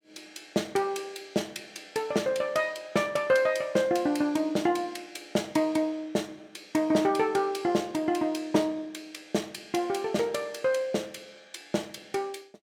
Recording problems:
none

